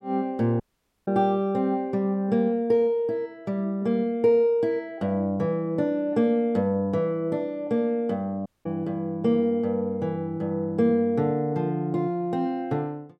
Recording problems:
audio cutting out; at 0.5 s and at 8.5 s

